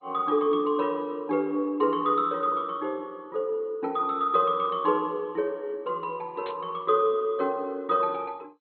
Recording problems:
codec artefacts; MP2, log-spectral distance 2 dB, nothing above 3.5 kHz
burst of static; at 6.5 s; peak -12 dB vs average level

